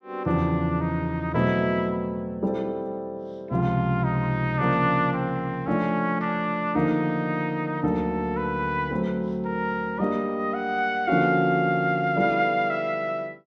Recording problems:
none

